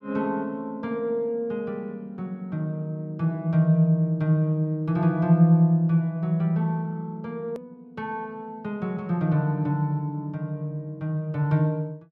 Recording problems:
edit click; at 7.5 s

